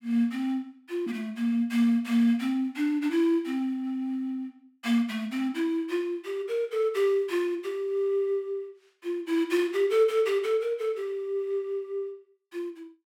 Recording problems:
none

